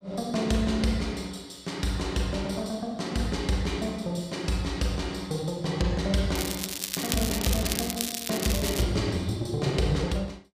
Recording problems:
crackling; from 6.5 to 9 s; loose cable, SNR 2 dB

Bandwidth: 15 kHz